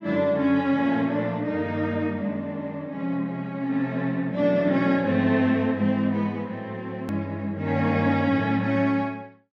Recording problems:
hard cut with a click; at 7 s

